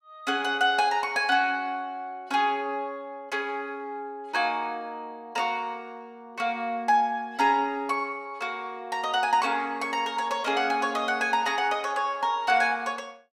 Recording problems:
none

